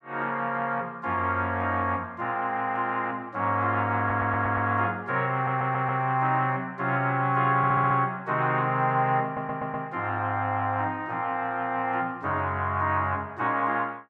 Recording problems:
audio stuttering; 4 times, first at 4 s

